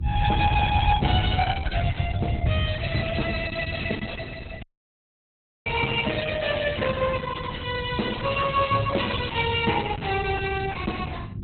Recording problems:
lossy codec; Opus, log-spectral distance 5 dB, nothing above 4 kHz
hum; 50 Hz, harmonics up to 350 Hz, SNR 15 dB
low-frequency rumble; below 120 Hz, SNR 3 dB
dropout; at 4.5 s for 1 s

